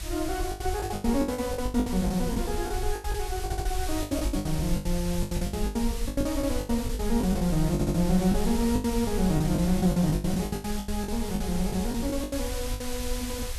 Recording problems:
background hiss; slope +1 dB per octave, SNR 10 dB
low-frequency rumble; below 66 Hz, SNR 7 dB
packet loss; 19% of the sound replaced, filled with the last packet
stutter; at 3.5 s and at 7.5 s

